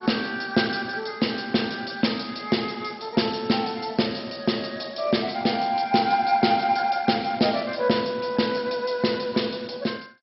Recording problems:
lossy compression; MP2, log-spectral distance 8 dB, nothing above 5.5 kHz

